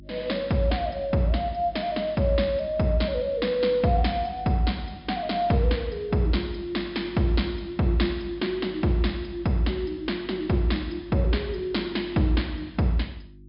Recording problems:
low-pass filter; nothing above 5.5 kHz
electrical hum; 50 Hz, harmonics up to 350 Hz, SNR 22 dB

